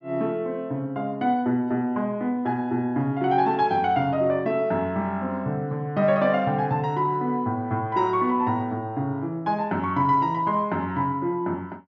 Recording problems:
treble missing; nothing above 7.3 kHz

